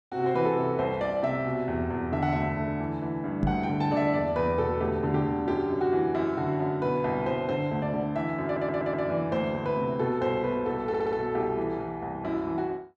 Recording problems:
microphone thump; at 3.5 s; peak +5 dB vs average level
stutter; at 8.5 s and at 11 s

